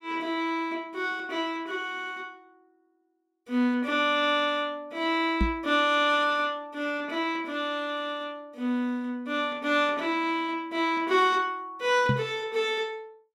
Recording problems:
knock on the microphone; at 5.5 s and at 12 s; peak +4 dB vs average level

